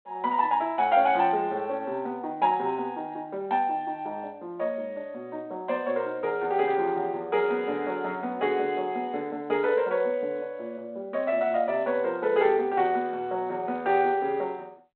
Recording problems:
phone line; 260 Hz to 3.7 kHz, G.726

